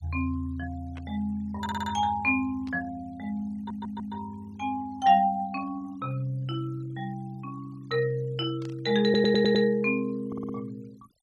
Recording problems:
denoising artefacts; signal-to-artefact ratio 26 dB
static burst; at 1 s, at 2.5 s and at 8.5 s; peak -15 dB vs average level
stutter; 4 times, first at 1.5 s

